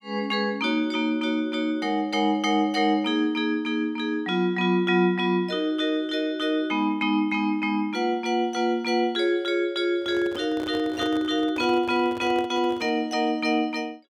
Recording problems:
microphone handling noise; from 10 to 13 s; peak -6 dB vs average level

